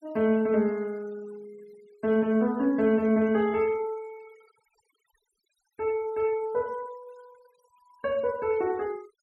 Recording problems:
denoising artefacts; signal-to-artefact ratio 25 dB

